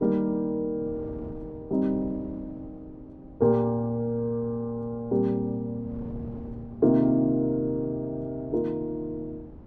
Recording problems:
wind noise; below 290 Hz, SNR 18 dB

